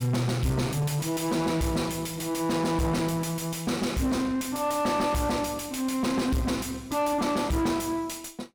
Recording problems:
distortion; soft clipping, signal-to-distortion ratio 6 dB

